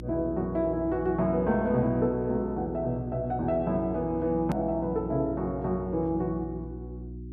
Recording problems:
hum; 60 Hz, harmonics up to 360 Hz, SNR 12 dB
click at an edit; at 4.5 s

